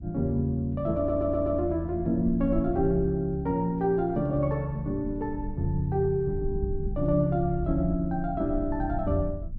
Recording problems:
low-frequency rumble; below 78 Hz, SNR 11 dB
audio stuttering; at 1 s

